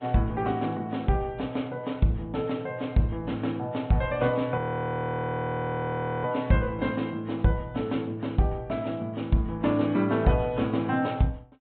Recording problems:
treble missing; nothing above 3.8 kHz
lossy compression; AAC, log-spectral distance 2 dB
frozen audio; at 4.5 s for 1.5 s

